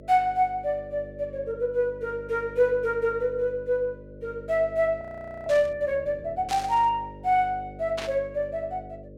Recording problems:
hum; 50 Hz, harmonics up to 600 Hz, SNR 17 dB
frozen audio; at 5 s
static burst; at 5.5 s, at 6.5 s and at 8 s; peak -4 dB vs average level

